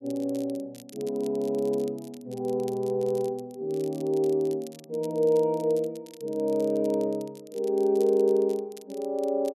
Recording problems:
crackling; vinyl, SNR 24 dB

